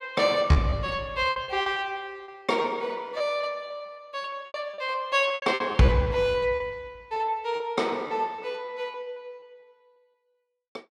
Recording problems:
packet loss; 13% of the sound replaced, filled with repeated pitch periods

